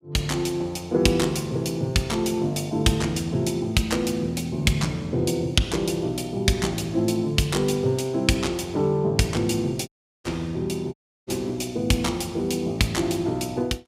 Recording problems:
dropout; at 10 s and at 11 s

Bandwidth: 15.5 kHz